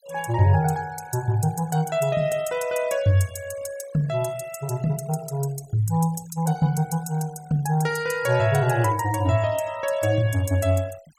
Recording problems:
noise reduction artefacts; signal-to-artefact ratio 21 dB

